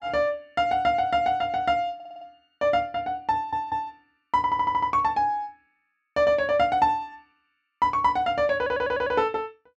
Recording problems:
stutter; 4 times, first at 2 s

